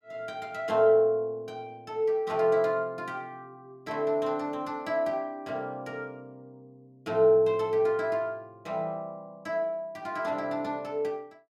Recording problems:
none

